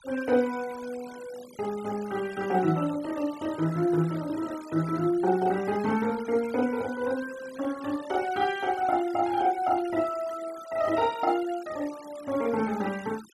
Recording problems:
denoising artefacts; signal-to-artefact ratio 19 dB

